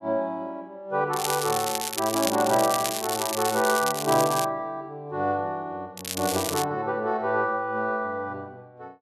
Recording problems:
crackling; from 1 to 4.5 s and at 6 s; loose cable, SNR 4 dB

